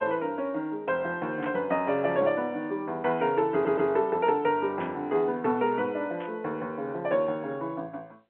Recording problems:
telephone audio; 220 Hz to 3.4 kHz, G.711
static burst; at 1.5 s, at 5 s and at 6 s; peak -9 dB vs average level
audio stuttering; at 3.5 s

